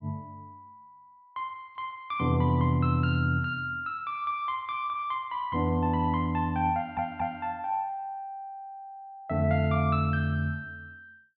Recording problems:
stutter; at 7 s

